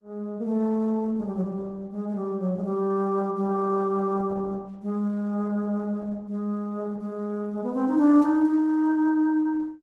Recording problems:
lossy compression; Opus, log-spectral distance 2 dB

